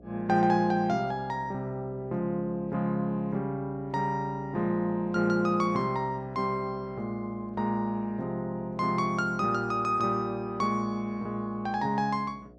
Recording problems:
electrical hum; 60 Hz, harmonics up to 720 Hz, SNR 23 dB

